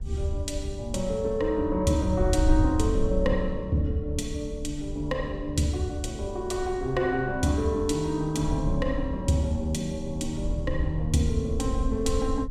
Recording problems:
wind noise; below 76 Hz, SNR 6 dB

